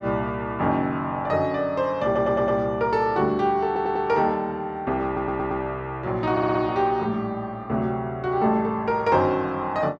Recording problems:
audio stuttering; 4 times, first at 2 s

